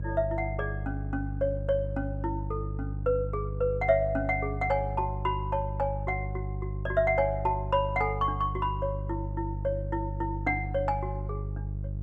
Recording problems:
electrical hum; 50 Hz, harmonics up to 350 Hz, SNR 4 dB

